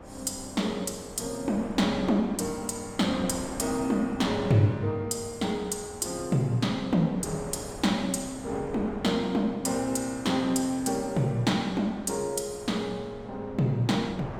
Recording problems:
wind on the microphone; below 840 Hz, SNR 15 dB

